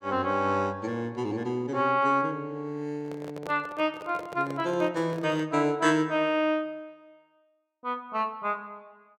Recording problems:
handling noise; from 3 to 5.5 s; peak -6 dB vs average level

